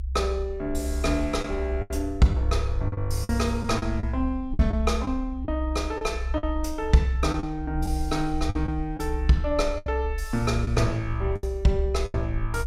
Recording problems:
low-frequency rumble; below 66 Hz, strongest tone 64 Hz, SNR 5 dB
lost packets; 7% of the sound replaced, filled with the last packet

